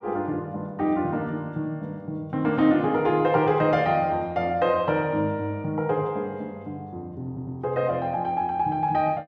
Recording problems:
audio stuttering; at 7.5 s

